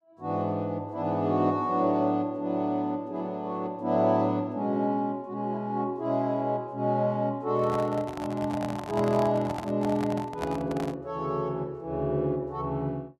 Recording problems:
microphone handling noise; from 7.5 to 11 s; peak -2 dB vs average level

